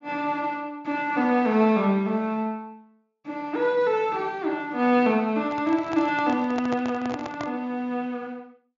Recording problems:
treble missing; nothing above 7.2 kHz
handling noise; from 5.5 to 7.5 s; peak -4 dB vs average level

